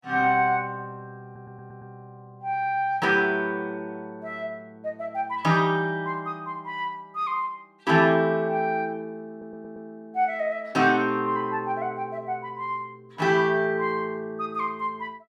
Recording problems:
audio stuttering; at 1.5 s and at 9.5 s

